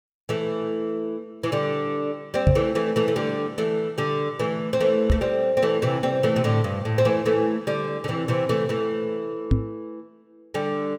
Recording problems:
microphone thump; at 2.5 s, at 5 s and at 9.5 s; peak +9 dB vs average level

